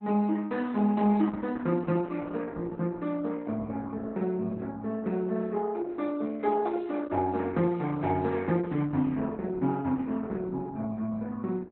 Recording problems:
lossy compression; Opus, log-spectral distance 3 dB, nothing above 4 kHz

